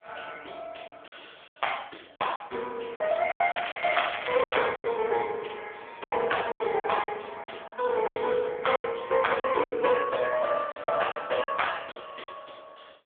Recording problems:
telephone audio; 260 Hz to 3.4 kHz, AMR-NB
packet loss; 11% of the sound replaced, filled with silence
crackle; from 3.5 to 4.5 s; loose cable, SNR 7 dB

